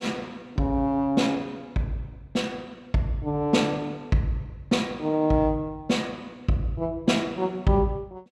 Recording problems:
none

